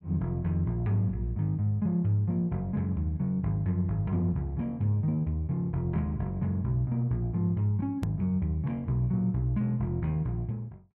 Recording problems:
edit click; at 8 s

